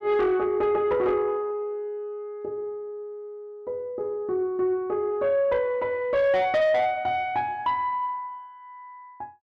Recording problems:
distortion; soft clipping, signal-to-distortion ratio 11 dB

